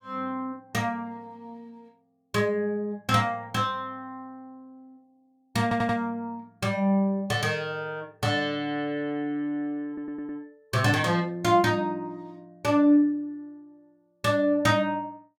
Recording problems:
audio stuttering; at 5.5 s and at 10 s

